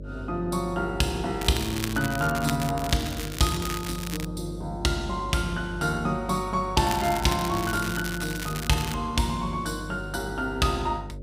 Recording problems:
hum; 50 Hz, harmonics up to 600 Hz, SNR 11 dB
crackling; from 1.5 to 4.5 s and from 7 to 9 s; loose cable, SNR 8 dB

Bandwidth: 15.5 kHz